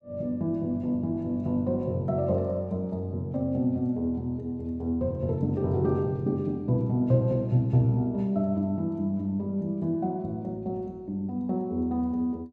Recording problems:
none

